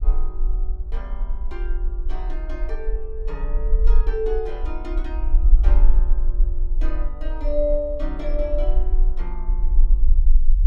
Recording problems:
low-frequency rumble; below 40 Hz, strongest tone 22 Hz, SNR -7 dB

